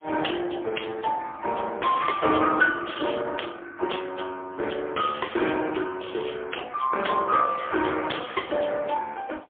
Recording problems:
telephone audio; 260 Hz to 2.6 kHz, AMR-NB, then MP3
distortion; hard clipping, signal-to-distortion ratio 11 dB

